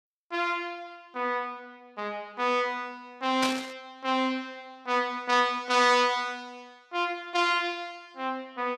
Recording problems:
static burst; at 3.5 s; peak +1 dB vs average level

